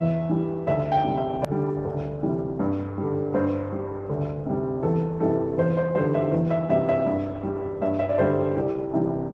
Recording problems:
lossy compression; Opus, log-spectral distance 2 dB, nothing above 13.3 kHz
edit click; at 1.5 s

